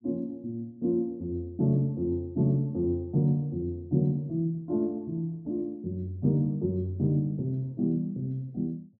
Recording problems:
none

